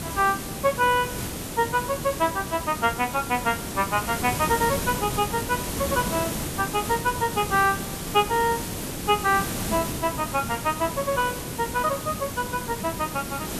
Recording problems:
hiss; SNR 5 dB

